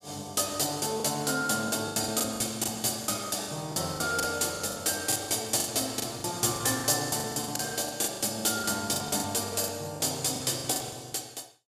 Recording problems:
packet loss; 15% of the sound replaced, filled with the last packet

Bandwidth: 15 kHz